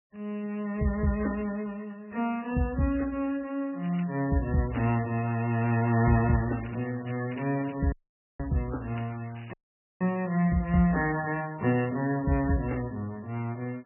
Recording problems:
lossy codec; MP3, log-spectral distance 7 dB, nothing above 2.8 kHz
crackling; from 4 to 5 s and from 6.5 to 10 s; loose cable, SNR 22 dB
dropout; at 8 s and at 9.5 s

